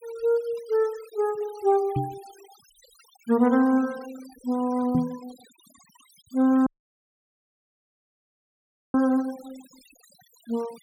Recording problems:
denoising artefacts; signal-to-artefact ratio 25 dB
knock on the microphone; at 2 s and at 5 s; peak +2 dB vs average level
audio cutting out; at 6.5 s for 2.5 s

